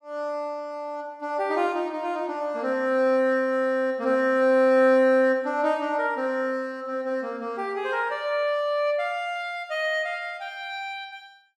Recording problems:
none

